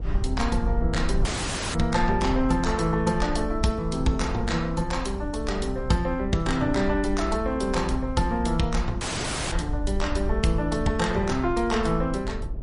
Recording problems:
lossy codec; MP3, log-spectral distance 3 dB, nothing above 10.4 kHz
rumble; below 58 Hz, SNR 7 dB
wind noise; below 370 Hz, SNR 19 dB
audio cutting out; at 1.5 s for 0.5 s and at 9 s for 0.5 s

